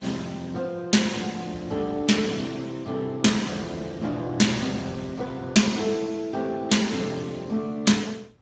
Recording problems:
lossy compression; Speex, log-spectral distance 4 dB, nothing above 7.3 kHz
wind on the microphone; below 430 Hz, SNR 20 dB

